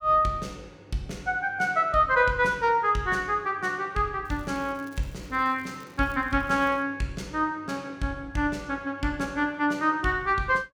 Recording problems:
crackle; from 4.5 to 7 s; loose cable, SNR 30 dB

